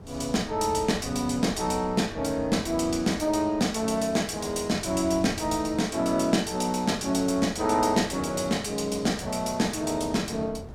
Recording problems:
wind noise; below 250 Hz, SNR 17 dB

